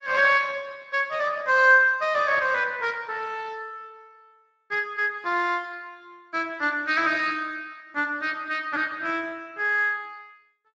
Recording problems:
lossy compression; Speex, log-spectral distance 4 dB

